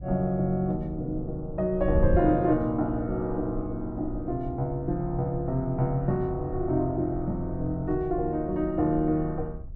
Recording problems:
wind on the microphone; below 74 Hz, SNR 11 dB

